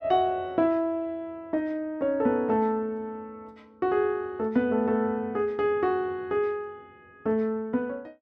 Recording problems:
none

